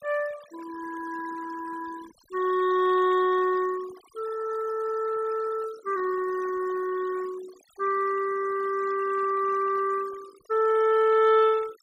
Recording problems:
denoising artefacts; signal-to-artefact ratio 20 dB

